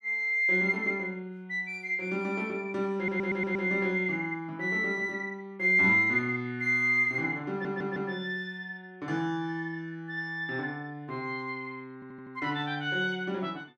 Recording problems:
audio stuttering; at 3 s, at 7.5 s and at 12 s

